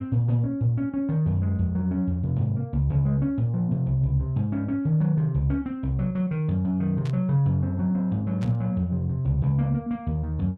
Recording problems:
burst of static; at 7 s and at 8.5 s; peak -14 dB vs average level

